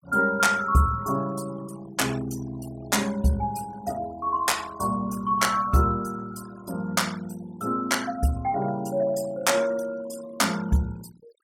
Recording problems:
noise reduction artefacts; signal-to-artefact ratio 19 dB

